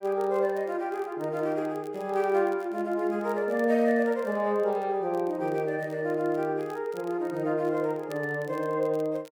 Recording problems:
crackling; vinyl, SNR 29 dB

